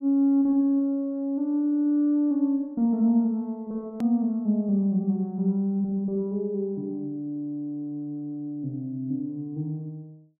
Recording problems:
click at an edit; at 4 s

